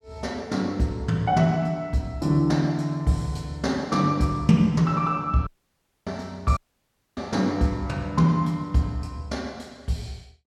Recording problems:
audio cutting out; at 5.5 s for 0.5 s and at 6.5 s for 0.5 s

